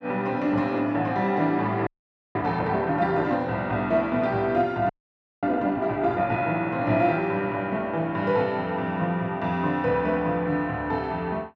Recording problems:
frozen audio; at 2 s and at 5 s for 0.5 s

